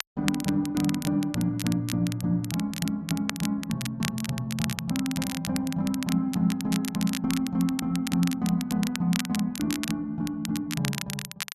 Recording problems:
crackle; vinyl, SNR 8 dB

